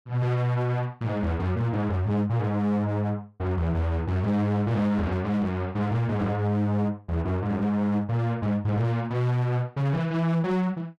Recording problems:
distortion; hard clipping, uneven, signal-to-distortion ratio 10 dB

